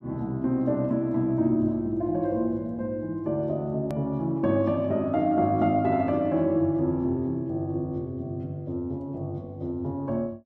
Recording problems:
hard cut with a click; at 4 s

